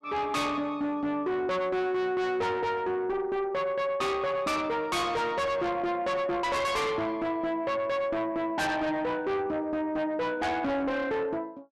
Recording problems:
distortion; soft clipping, signal-to-distortion ratio 6 dB

